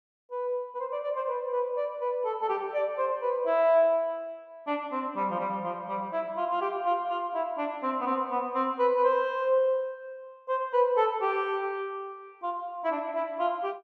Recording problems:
none

